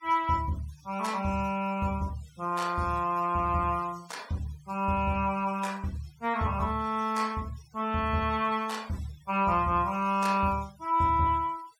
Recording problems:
noise reduction artefacts; signal-to-artefact ratio 23 dB

